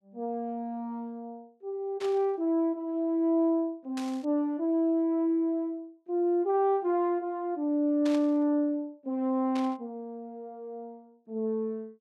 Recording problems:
burst of static; 4 times, first at 2 s; peak -9 dB vs average level

